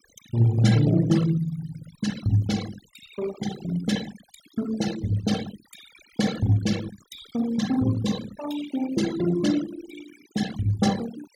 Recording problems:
denoising artefacts; signal-to-artefact ratio 13 dB

